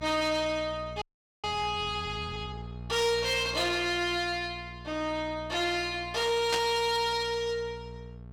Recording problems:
distorted audio; soft clipping, signal-to-distortion ratio 11 dB
electrical hum; 60 Hz, harmonics up to 900 Hz, SNR 15 dB
frozen audio; at 1 s
static burst; at 6.5 s; peak +3 dB vs average level

